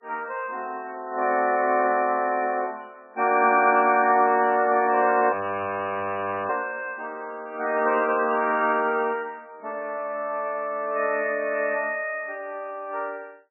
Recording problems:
lossy codec; MP3, log-spectral distance 3 dB, nothing above 2.4 kHz
frozen audio; at 5.5 s for 1 s

